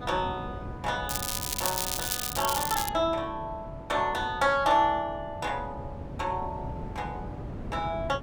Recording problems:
wind on the microphone; below 290 Hz, SNR 11 dB
crackle; from 1 to 3 s; loose cable, SNR 1 dB

